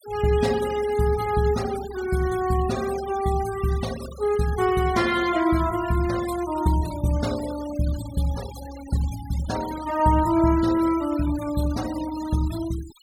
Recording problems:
noise reduction artefacts; signal-to-artefact ratio 15 dB

